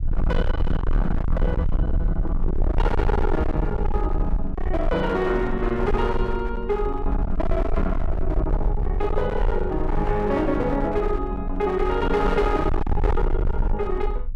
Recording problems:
distorted audio; hard clipping, uneven, signal-to-distortion ratio 5 dB
low-frequency rumble; below 62 Hz, SNR 2 dB

